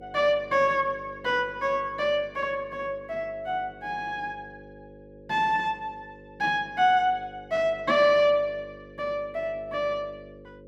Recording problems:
electrical hum; 50 Hz, harmonics up to 550 Hz, SNR 21 dB

